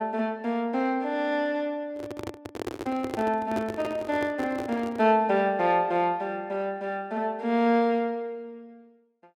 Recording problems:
handling noise; from 2 to 5 s; peak -2 dB vs average level

